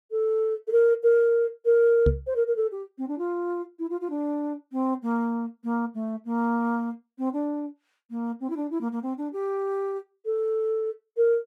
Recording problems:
microphone thump; at 2 s; peak +6 dB vs average level

